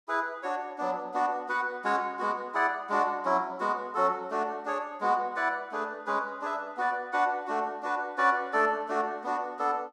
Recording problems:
none

